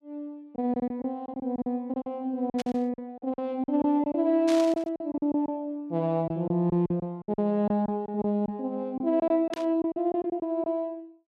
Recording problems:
packet loss; 12% of the sound replaced, filled with silence
burst of static; at 2.5 s, at 4.5 s and at 9.5 s; peak -5 dB vs average level

